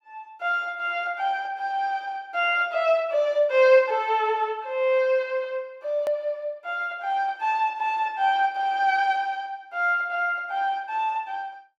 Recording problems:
edit click; at 6 s

